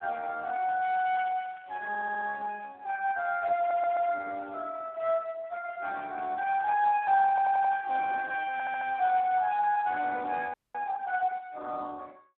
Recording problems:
telephone audio; 340 Hz to 3.1 kHz, Speex
crackling; from 0.5 to 2 s and from 7 to 9.5 s; loose cable, SNR 27 dB
stutter; 4 times, first at 2 s
audio freezing; at 11 s

